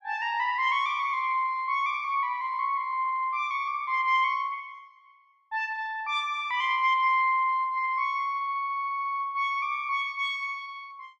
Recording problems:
none

